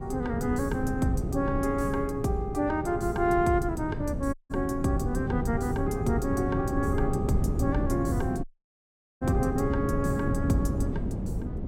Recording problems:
wind on the microphone; below 230 Hz, SNR 2 dB
audio cutting out; at 4.5 s and at 8.5 s for 1 s

